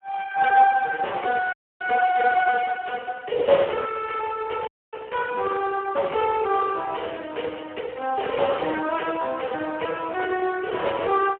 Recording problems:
telephone audio; 340 Hz to 2.9 kHz, Speex
audio freezing; at 1.5 s and at 4.5 s

